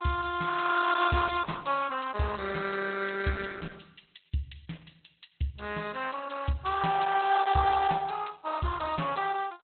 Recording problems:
codec artefacts; Opus, log-spectral distance 9 dB, nothing above 3.9 kHz

